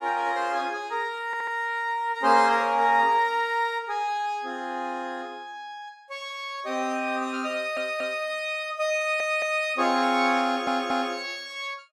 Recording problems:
stutter; 4 times, first at 1.5 s

